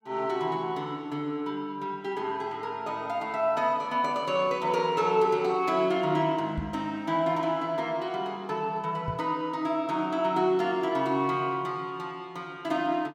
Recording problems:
microphone thump; at 6.5 s and at 9 s; peak -2 dB vs average level

